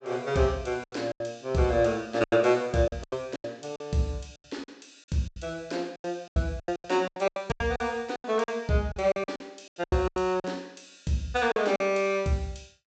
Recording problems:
low-pass filter; nothing above 8 kHz
lost packets; 15% of the sound replaced, filled with silence

